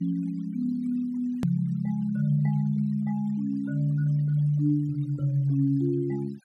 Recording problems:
noise reduction artefacts; signal-to-artefact ratio 28 dB
hard cut with a click; at 1.5 s

